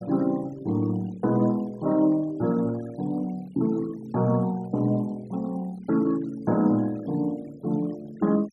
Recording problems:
noise reduction artefacts; signal-to-artefact ratio 24 dB

